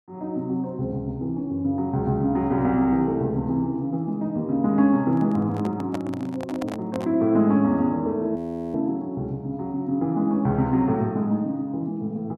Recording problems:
microphone handling noise; from 5 to 7 s; peak -6 dB vs average level
audio freezing; at 8.5 s

